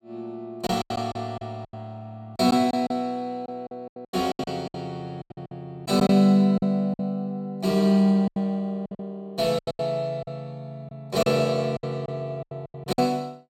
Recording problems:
lost packets; 13% of the sound replaced, filled with silence

